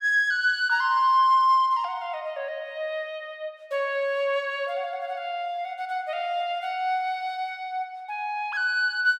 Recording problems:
none

